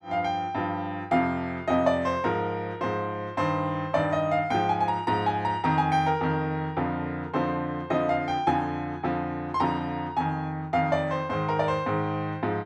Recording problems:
none

